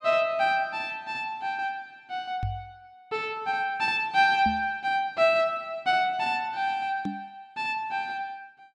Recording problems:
microphone bump; at 2.5 s, at 4.5 s and at 7 s; peak -1 dB vs average level

